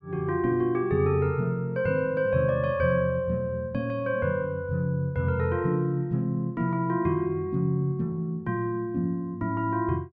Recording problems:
none

